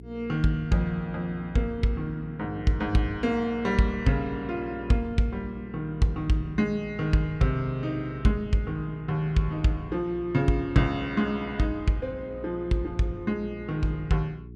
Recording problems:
hum; 60 Hz, harmonics up to 420 Hz, SNR 16 dB

